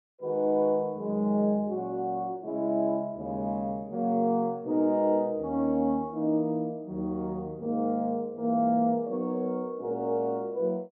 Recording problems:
none

